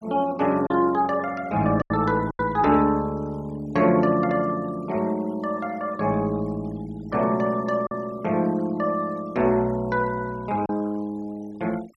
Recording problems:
denoising artefacts; signal-to-artefact ratio 24 dB
lost packets; 2% of the sound replaced, filled with silence

